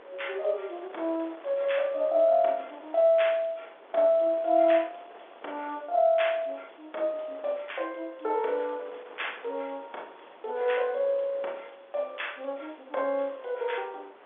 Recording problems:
phone line; 340 Hz to 3.6 kHz, G.711
wind noise; below 1.4 kHz, SNR 22 dB

